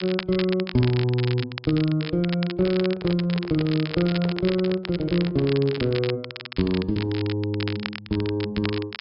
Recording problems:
low-pass filter; nothing above 5.5 kHz
crackling; vinyl, SNR 11 dB
lost packets; 0.5% of the sound replaced, filled with repeated pitch periods
handling noise; from 2.5 to 6 s; peak -8 dB vs average level

